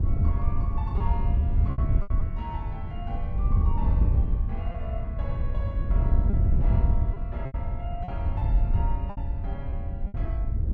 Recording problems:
rumble; below 140 Hz, SNR 8 dB
wind on the microphone; below 88 Hz, SNR -13 dB
lost packets; 5% of the sound replaced, filled with repeated pitch periods

